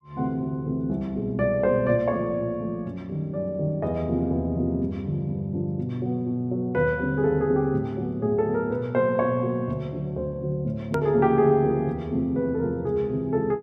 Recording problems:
edit click; at 11 s

